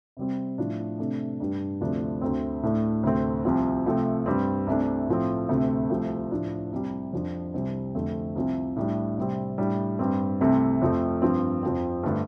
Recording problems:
none

